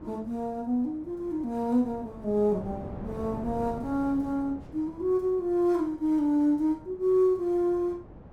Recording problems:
wind noise; below 430 Hz, SNR 17 dB

